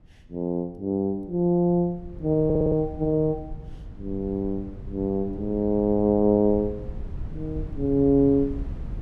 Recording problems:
wind noise; below 110 Hz, SNR 14 dB
stutter; at 2.5 s

